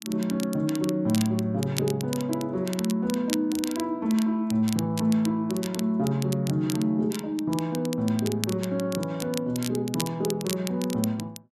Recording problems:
crackle; vinyl, SNR 11 dB

